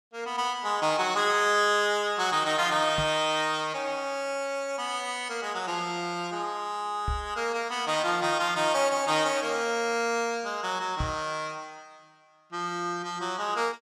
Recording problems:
knock on the microphone; at 3 s, at 7 s and at 11 s; peak -1 dB vs average level

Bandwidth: 14.5 kHz